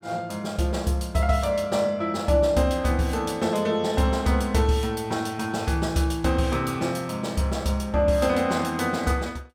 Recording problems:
none

